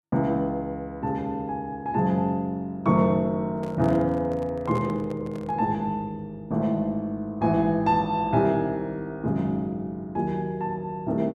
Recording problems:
microphone handling noise; from 3.5 to 5.5 s; peak -9 dB vs average level

